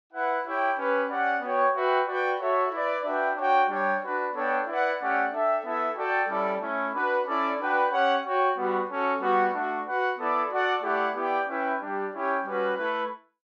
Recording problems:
none

